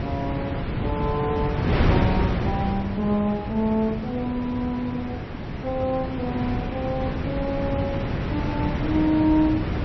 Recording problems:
codec artefacts; MP3, log-spectral distance 2 dB
wind on the microphone; below 420 Hz, SNR 1 dB

